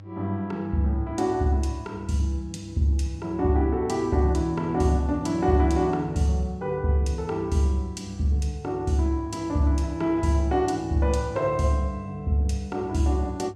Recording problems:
electrical hum; 50 Hz, harmonics up to 600 Hz, SNR 19 dB

